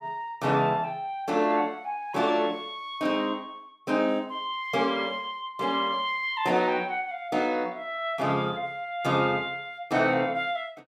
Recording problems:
none

